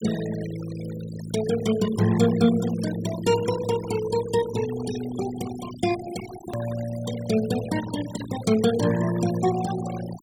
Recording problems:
denoising artefacts; signal-to-artefact ratio 13 dB
edit click; at 6.5 s

